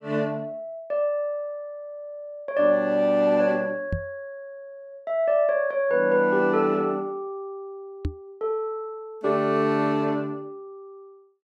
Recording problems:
microphone bump; at 4 s and at 8 s; peak 0 dB vs average level

